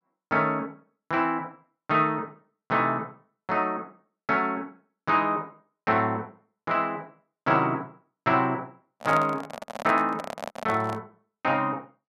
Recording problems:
microphone handling noise; from 9 to 11 s; peak -2 dB vs average level

